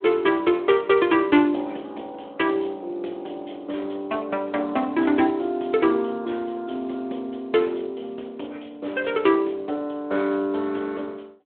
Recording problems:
phone line; 240 Hz to 3.5 kHz, Speex

